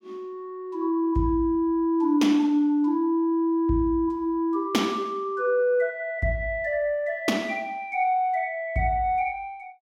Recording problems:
none

